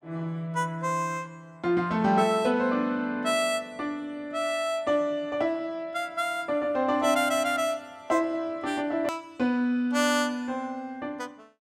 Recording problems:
edit click; at 9 s

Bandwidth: 16 kHz